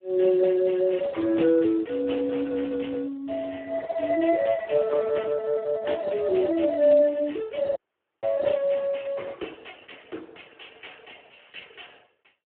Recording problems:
telephone audio; 280 Hz to 2.1 kHz, Speex
audio cutting out; at 8 s

